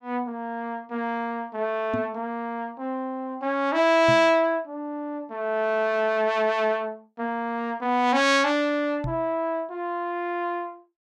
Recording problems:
microphone thump; at 2 s, at 4 s and at 9 s; peak -1 dB vs average level

